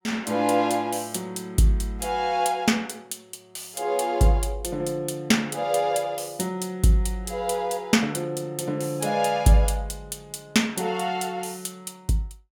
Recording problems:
none

